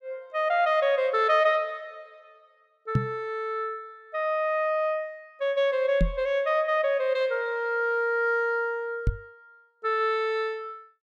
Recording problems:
microphone bump; at 3 s, at 6 s and at 9 s; peak +6 dB vs average level

